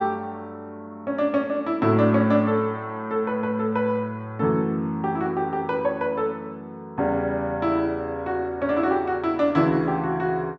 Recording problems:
treble cut off; nothing above 7.7 kHz

